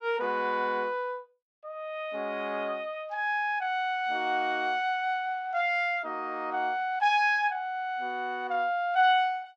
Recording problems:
none

